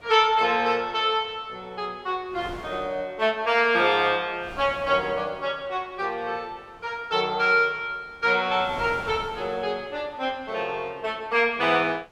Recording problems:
wind noise; below 1.1 kHz, SNR 21 dB

